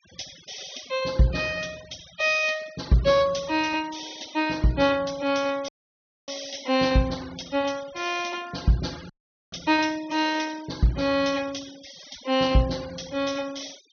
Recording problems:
treble cut off; nothing above 6.4 kHz
denoising artefacts; signal-to-artefact ratio 20 dB
dropout; at 5.5 s for 0.5 s and at 9 s

